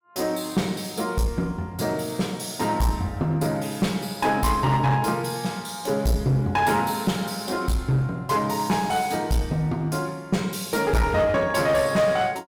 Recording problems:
distorted audio; hard clipping, uneven, signal-to-distortion ratio 10 dB

